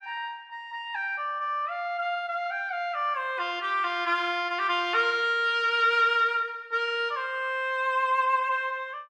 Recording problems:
none

